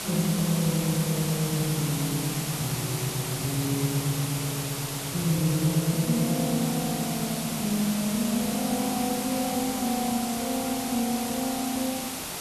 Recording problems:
background hiss; SNR 4 dB

